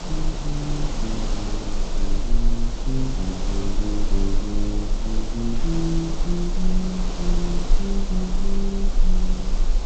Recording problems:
codec artefacts; G.722, log-spectral distance 2 dB, nothing above 13.1 kHz
background hiss; SNR 4 dB
rumble; below 30 Hz, strongest tone 18 Hz, SNR -1 dB
static burst; at 5.5 s and at 8.5 s; peak -12 dB vs average level

